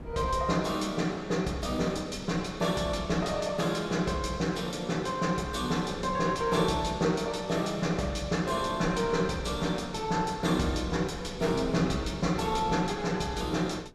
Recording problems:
wind on the microphone; below 240 Hz, SNR 17 dB

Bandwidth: 14.5 kHz